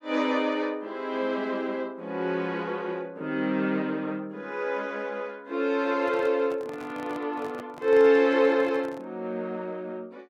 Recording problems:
handling noise; from 6 to 9 s; peak -11 dB vs average level

